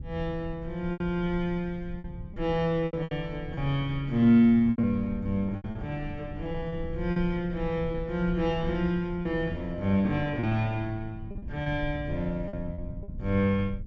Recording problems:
treble missing; nothing above 8 kHz
rumble; below 100 Hz, SNR 13 dB
packet loss; 8% of the sound replaced, filled with repeated pitch periods

